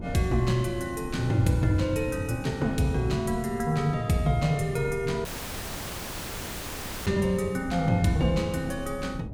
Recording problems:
wind noise; below 220 Hz, SNR 11 dB
dropout; at 5.5 s for 2 s

